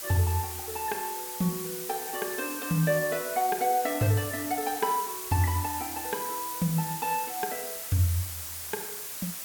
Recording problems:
hiss; slope +1 dB per octave, SNR 5 dB

